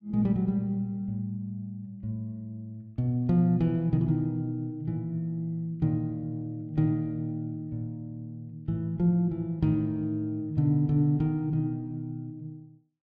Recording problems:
none

